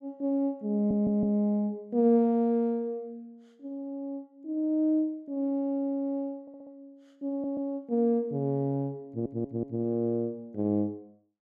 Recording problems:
stutter; 4 times, first at 1 s

